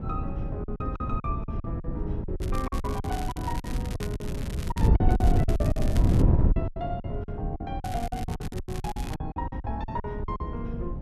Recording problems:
wind on the microphone; below 140 Hz, SNR -7 dB
packet loss; 16% of the sound replaced, filled with silence
crackle; from 2.5 to 5 s, from 5 to 6 s and from 8 to 9 s; loose cable, SNR 9 dB

